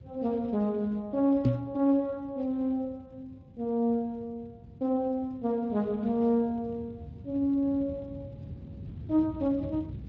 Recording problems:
lossy compression; Speex, log-spectral distance 2 dB
low-frequency rumble; below 200 Hz, SNR 16 dB
microphone thump; at 1.5 s; peak +8 dB vs average level

